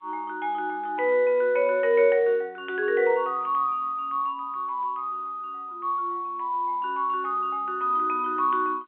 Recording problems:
telephone audio; 320 Hz to 3.3 kHz, G.711

